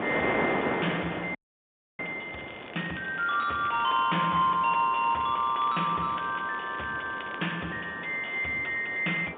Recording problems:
phone line; 240 Hz to 3.5 kHz, G.711
distortion; soft clipping, signal-to-distortion ratio 10 dB
wind noise; below 1.3 kHz, SNR 8 dB
audio freezing; at 1.5 s for 0.5 s
crackle; from 2.5 to 4.5 s and from 5 to 7.5 s; loose cable, SNR 20 dB

